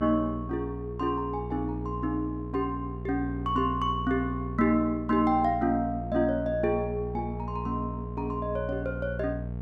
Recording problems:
hum; 60 Hz, harmonics up to 720 Hz, SNR 7 dB

